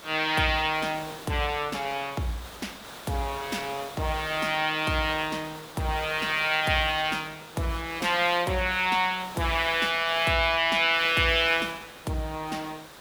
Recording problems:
background hiss; SNR 16 dB

